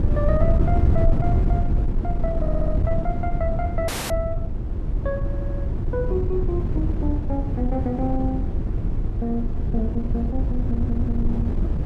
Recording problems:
wind noise; below 110 Hz, SNR -4 dB
stutter; at 2.5 s, at 5.5 s and at 11 s
audio freezing; at 4 s

